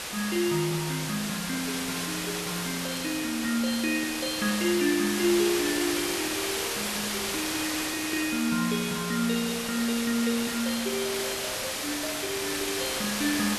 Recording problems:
background hiss; slope -1 dB per octave, SNR 1 dB

